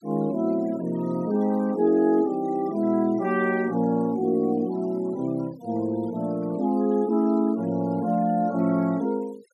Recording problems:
denoising artefacts; signal-to-artefact ratio 26 dB

